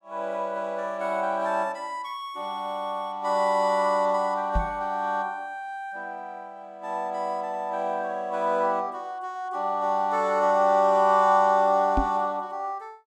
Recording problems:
microphone bump; at 4.5 s and at 12 s; peak +3 dB vs average level

